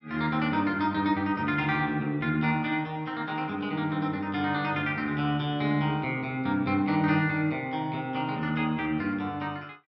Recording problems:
none

